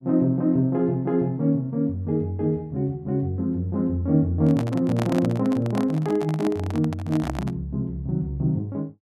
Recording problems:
handling noise; from 4.5 to 7.5 s; peak -2 dB vs average level

